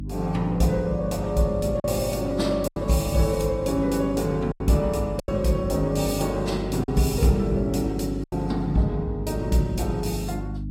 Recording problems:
codec artefacts; AAC, log-spectral distance 2 dB, nothing above 15.1 kHz
electrical hum; 50 Hz, harmonics up to 300 Hz, SNR 8 dB
lost packets; 4% of the sound replaced, filled with silence

